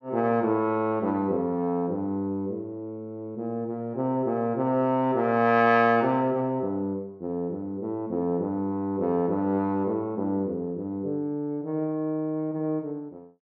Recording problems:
none

